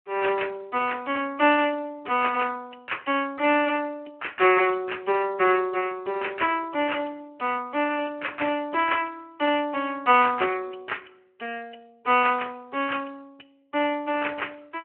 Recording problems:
telephone audio; 260 Hz to 3.1 kHz, Speex

